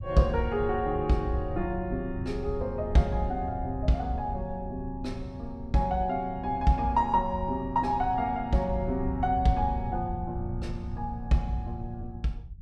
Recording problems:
low-frequency rumble; below 100 Hz, SNR 9 dB

